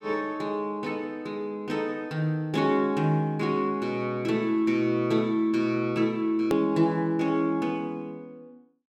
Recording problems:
hard cut with a click; at 6.5 s

